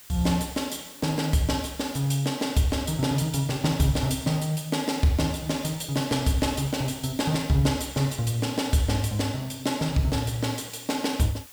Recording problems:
hiss; slope +1 dB per octave, SNR 19 dB

